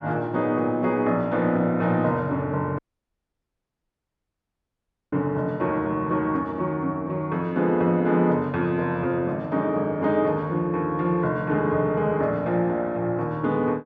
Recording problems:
audio cutting out; at 3 s for 2.5 s

